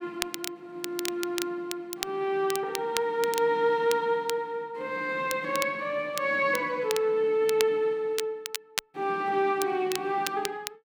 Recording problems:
crackle; vinyl, SNR 9 dB

